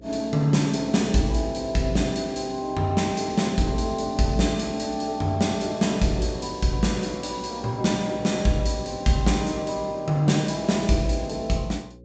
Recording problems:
treble missing; nothing above 8 kHz
mains hum; 60 Hz, harmonics up to 540 Hz, SNR 23 dB

